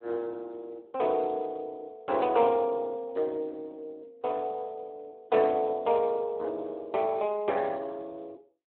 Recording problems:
phone line; 280 Hz to 2.8 kHz, Speex

